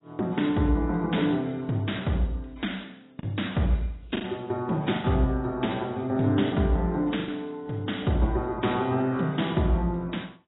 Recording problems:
codec artefacts; AAC, log-spectral distance 4 dB, nothing above 3.8 kHz
packet loss; 3% of the sound replaced, filled with the last packet

